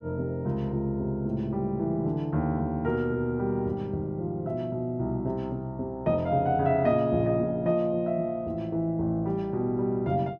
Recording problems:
none

